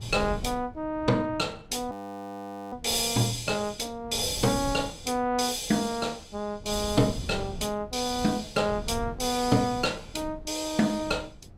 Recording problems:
wind on the microphone; below 170 Hz, SNR 15 dB
audio freezing; at 2 s for 1 s

